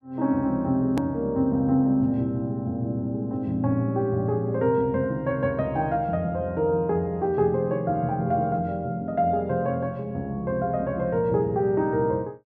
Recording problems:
click at an edit; at 1 s

